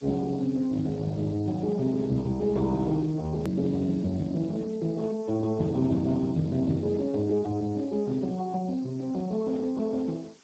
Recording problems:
codec artefacts; Speex, log-spectral distance 3 dB, nothing above 13.1 kHz
hiss; slope 0 dB per octave, SNR 28 dB
edit click; at 3.5 s

